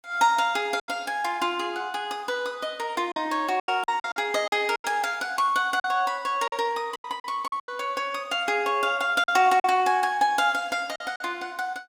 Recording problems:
lost packets; 8% of the sound replaced, filled with silence

